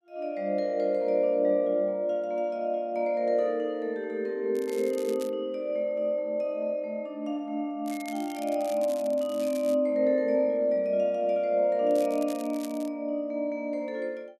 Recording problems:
crackle; at 4.5 s, from 8 to 9.5 s and at 12 s; loose cable, SNR 20 dB

